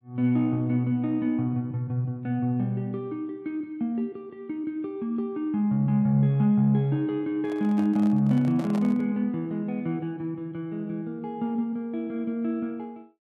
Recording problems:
microphone handling noise; from 7.5 to 9 s; peak -8 dB vs average level

